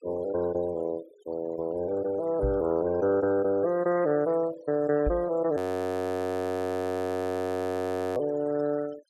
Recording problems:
denoising artefacts; signal-to-artefact ratio 20 dB
microphone thump; at 2.5 s and at 5 s; peak 0 dB vs average level
audio freezing; at 5.5 s for 2.5 s

